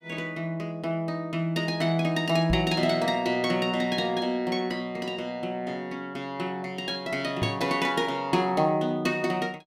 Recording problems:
microphone thump; at 2.5 s and at 7.5 s; peak +1 dB vs average level

